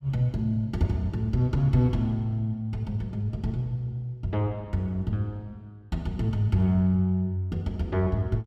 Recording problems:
none

